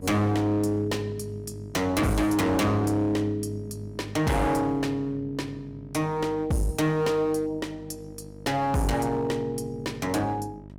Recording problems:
distortion; hard clipping, uneven, signal-to-distortion ratio 7 dB
hum; 50 Hz, harmonics up to 1 kHz, SNR 18 dB

